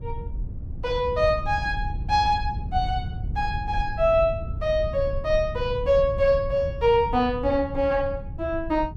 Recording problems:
low-frequency rumble; below 100 Hz, SNR 9 dB

